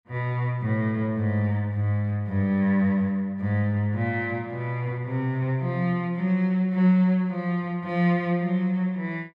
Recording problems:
none

